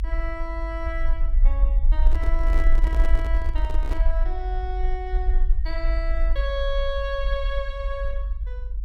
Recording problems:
rumble; below 48 Hz, strongest tone 24 Hz, SNR -7 dB
microphone handling noise; from 2 to 4 s; peak 0 dB vs average level

